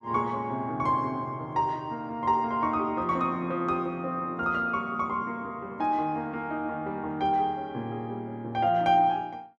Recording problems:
none

